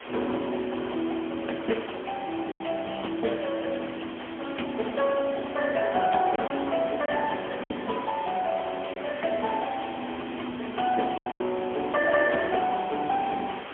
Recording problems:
telephone audio; 220 Hz to 3.3 kHz, AMR-NB, then MP3
background hiss; SNR 12 dB
packet loss; 3% of the sound replaced, filled with silence

